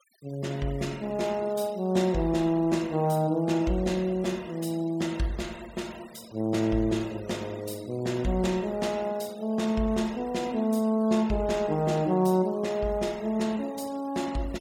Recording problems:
noise reduction artefacts; signal-to-artefact ratio 22 dB

